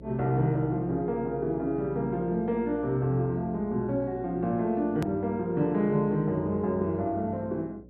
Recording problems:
treble cut off; nothing above 4.5 kHz
electrical hum; 60 Hz, harmonics up to 600 Hz, SNR 18 dB
hard cut with a click; at 5 s

